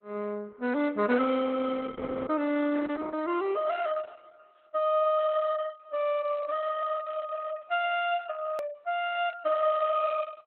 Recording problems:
lossy codec; Opus, log-spectral distance 3 dB
edit click; at 8.5 s

